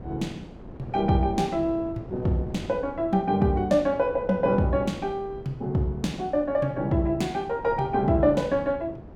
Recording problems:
wind on the microphone; below 400 Hz, SNR 17 dB

